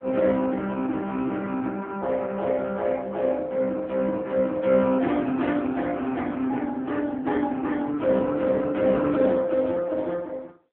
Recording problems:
telephone audio; 170 Hz to 3.5 kHz, AMR-NB

